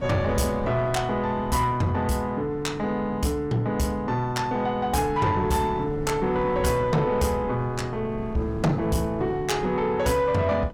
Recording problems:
distorted audio; soft clipping, signal-to-distortion ratio 12 dB
wind on the microphone; below 290 Hz, SNR 14 dB

